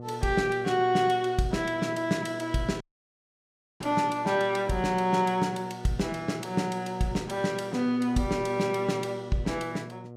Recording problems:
electrical hum; 60 Hz, harmonics up to 1.2 kHz, SNR 15 dB
dropout; at 3 s for 1 s

